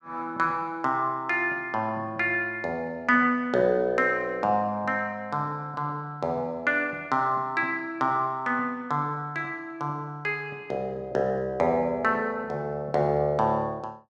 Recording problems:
none

